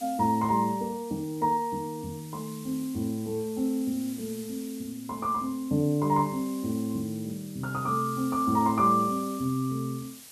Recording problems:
background hiss; SNR 17 dB

